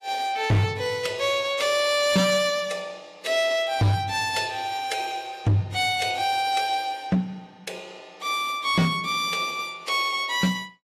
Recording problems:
lossy compression; AAC, log-spectral distance 3 dB
distortion; hard clipping, signal-to-distortion ratio 11 dB

